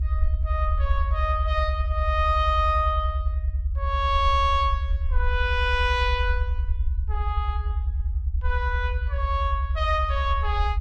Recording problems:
low-frequency rumble; below 74 Hz, SNR 1 dB

